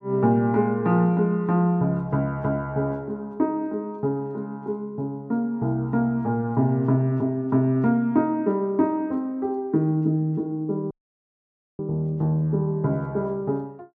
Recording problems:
dropout; at 11 s for 1 s

